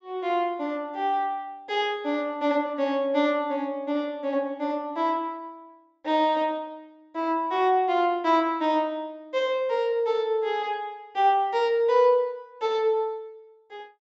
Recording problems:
treble missing; nothing above 8 kHz

